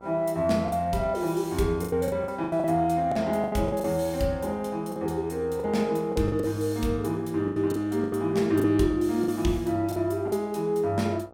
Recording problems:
hum; 60 Hz, harmonics up to 1.6 kHz, SNR 24 dB
packet loss; 10% of the sound replaced, filled with the last packet

